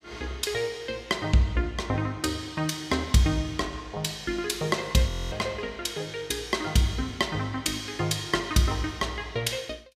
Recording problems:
frozen audio; at 5 s

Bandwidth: 15.5 kHz